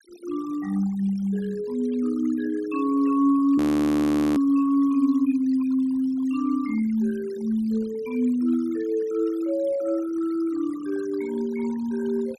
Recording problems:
denoising artefacts; signal-to-artefact ratio 21 dB
audio freezing; at 3.5 s for 1 s

